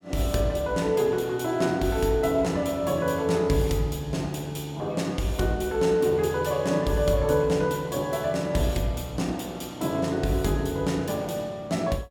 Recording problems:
none

